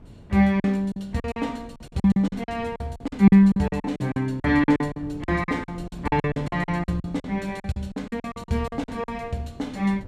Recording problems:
wind on the microphone; below 250 Hz, SNR 20 dB
lost packets; 18% of the sound replaced, filled with silence

